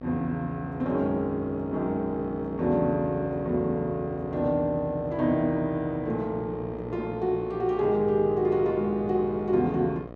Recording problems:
mains hum; 60 Hz, harmonics up to 1.8 kHz, SNR 14 dB

